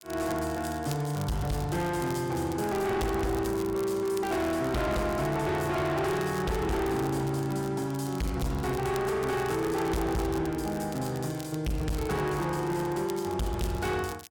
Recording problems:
distorted audio; hard clipping, signal-to-distortion ratio 7 dB
crackling; vinyl, SNR 17 dB

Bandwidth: 17.5 kHz